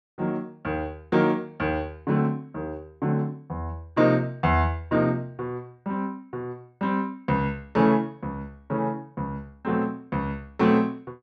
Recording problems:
none

